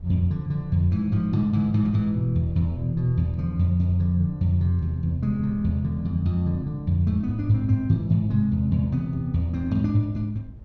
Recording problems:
wind on the microphone; below 110 Hz, SNR 20 dB

